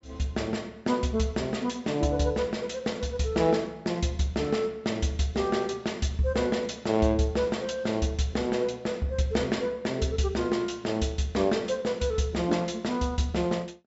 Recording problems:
treble missing; nothing above 8 kHz

